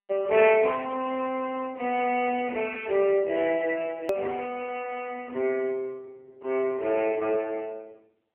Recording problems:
telephone audio; 280 Hz to 3.4 kHz, AMR-NB
edit click; at 4 s

